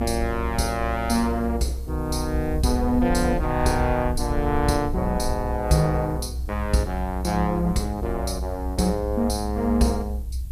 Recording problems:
hiss; SNR 29 dB
rumble; below 68 Hz, strongest tone 62 Hz, SNR 6 dB

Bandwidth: 14.5 kHz